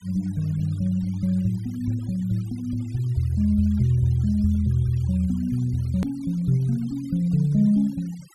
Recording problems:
noise reduction artefacts; signal-to-artefact ratio 27 dB
click at an edit; at 6 s

